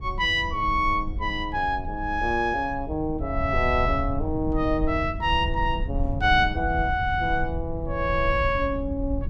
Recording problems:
rumble; below 88 Hz, SNR 7 dB

